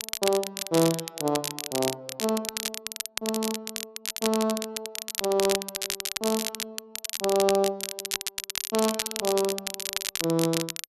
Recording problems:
crackling; vinyl, SNR 3 dB

